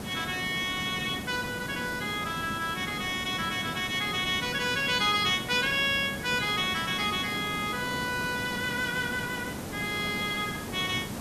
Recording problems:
background hiss; slope -5 dB per octave, SNR 8 dB

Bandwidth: 14 kHz